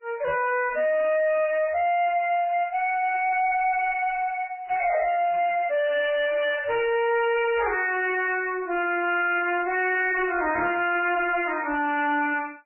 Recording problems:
lossy codec; MP3, log-spectral distance 4 dB, nothing above 2.9 kHz
distorted audio; soft clipping, signal-to-distortion ratio 7 dB

